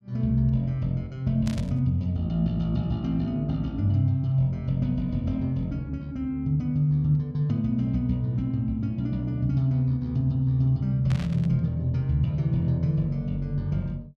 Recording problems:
static burst; at 1.5 s and at 11 s; peak -9 dB vs average level

